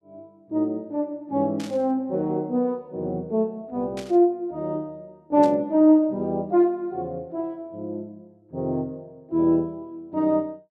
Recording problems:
burst of static; at 1.5 s, at 4 s and at 5.5 s; peak -11 dB vs average level

